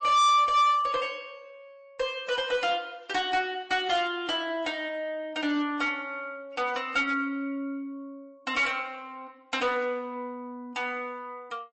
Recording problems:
lossy compression; MP3, log-spectral distance 2 dB, nothing above 7.8 kHz
distortion; hard clipping, uneven, signal-to-distortion ratio 7 dB

